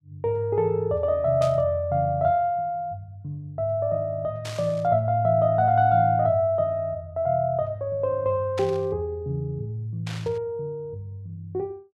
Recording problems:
static burst; 4 times, first at 1.5 s; peak -8 dB vs average level

